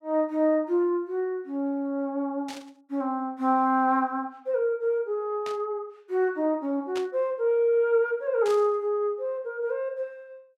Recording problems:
static burst; 4 times, first at 2.5 s; peak -8 dB vs average level

